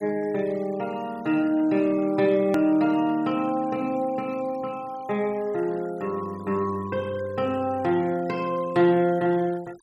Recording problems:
denoising artefacts; signal-to-artefact ratio 25 dB
edit click; at 2.5 s

